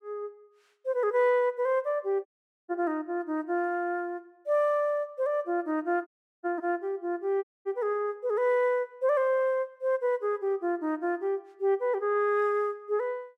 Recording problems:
dropout; at 2.5 s, at 6 s and at 7.5 s

